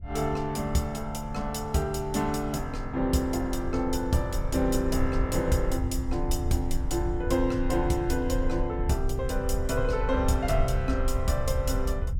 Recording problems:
rumble; below 74 Hz, SNR 5 dB

